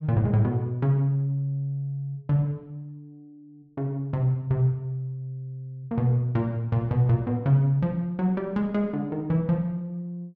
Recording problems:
none

